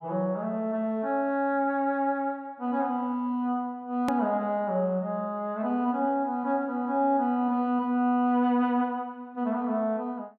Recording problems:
edit click; at 4 s

